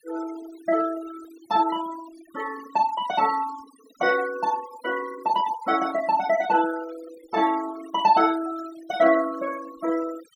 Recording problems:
noise reduction artefacts; signal-to-artefact ratio 15 dB

